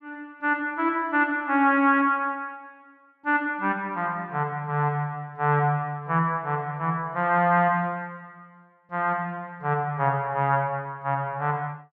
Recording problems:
none

